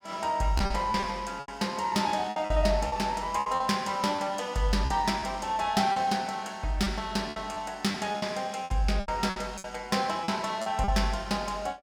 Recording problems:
packet loss; 9% of the sound replaced, filled with repeated pitch periods

